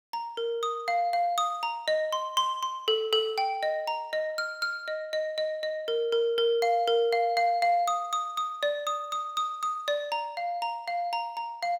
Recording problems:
none

